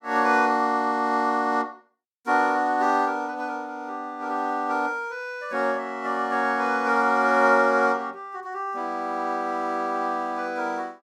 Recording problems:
none

